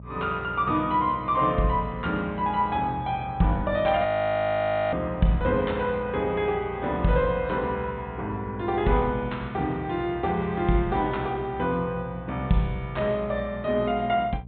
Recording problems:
treble missing; nothing above 4 kHz
hum; 60 Hz, harmonics up to 420 Hz, SNR 17 dB
frozen audio; at 4 s for 1 s

